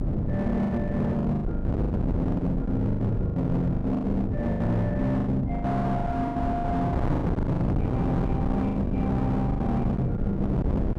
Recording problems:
distorted audio; hard clipping, signal-to-distortion ratio 6 dB
mains hum; 50 Hz, harmonics up to 500 Hz, SNR 18 dB
wind noise; below 260 Hz, SNR 1 dB
lost packets; 16% of the sound replaced, filled with the last packet

